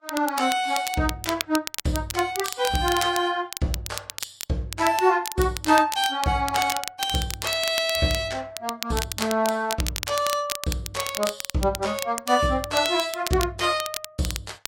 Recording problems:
lossy compression; Vorbis, log-spectral distance 3 dB, nothing above 12.3 kHz
crackle; vinyl, SNR 8 dB

